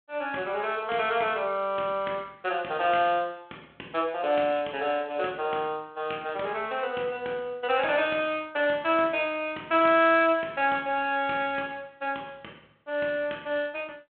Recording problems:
telephone audio; 240 Hz to 3.4 kHz, G.726

